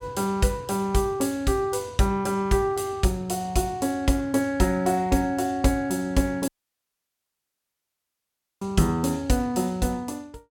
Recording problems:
audio cutting out; at 6.5 s for 2 s

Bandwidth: 17 kHz